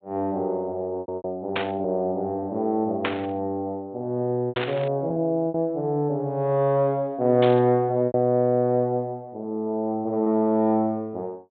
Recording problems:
treble cut off; nothing above 4 kHz
lost packets; 4% of the sound replaced, filled with repeated pitch periods
burst of static; 4 times, first at 1.5 s; peak +2 dB vs average level

